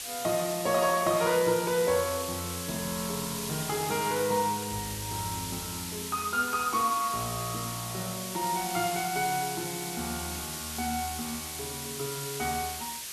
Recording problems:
hiss; slope +3 dB per octave, SNR 4 dB

